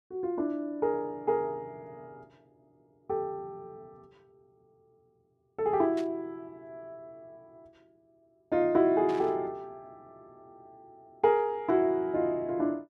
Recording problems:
static burst; at 6 s and at 9 s; peak -13 dB vs average level

